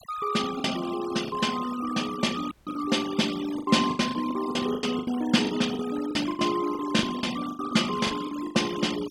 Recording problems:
noise reduction artefacts; signal-to-artefact ratio 14 dB
packet loss; 13% of the sound replaced, filled with the last packet
dropout; at 2.5 s

